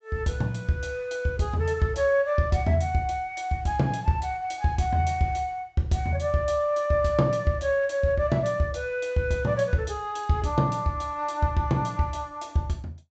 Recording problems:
treble cut off; nothing above 8 kHz

